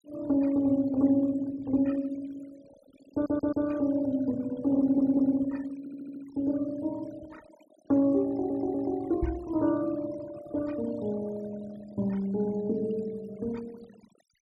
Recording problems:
denoising artefacts; signal-to-artefact ratio 23 dB
audio stuttering; 4 times, first at 3 s
microphone thump; at 9 s; peak 0 dB vs average level

